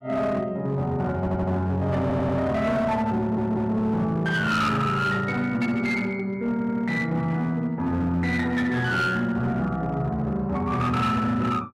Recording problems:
distorted audio; hard clipping, signal-to-distortion ratio 11 dB
audio stuttering; 4 times, first at 1 s

